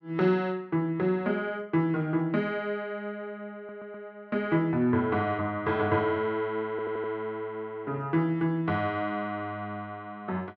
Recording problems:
stutter; at 3.5 s and at 6.5 s

